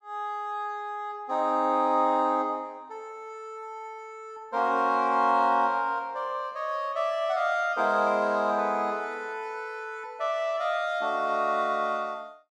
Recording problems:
none

